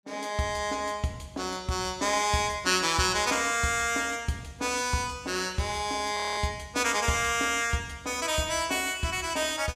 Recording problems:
frozen audio; at 6 s

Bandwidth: 15.5 kHz